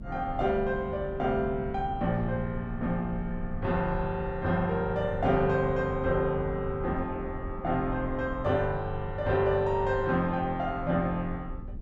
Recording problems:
rumble; below 110 Hz, SNR 12 dB

